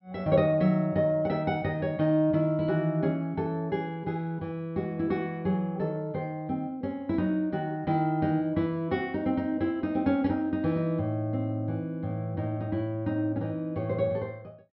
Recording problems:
treble cut off; nothing above 5.4 kHz

